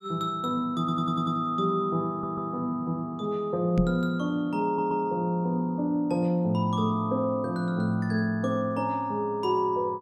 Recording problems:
audio stuttering; at 1 s, at 2 s and at 4.5 s
knock on the microphone; at 4 s; peak +4 dB vs average level

